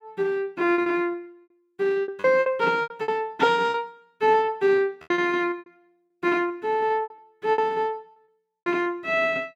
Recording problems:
lost packets; 13% of the sound replaced, filled with repeated pitch periods

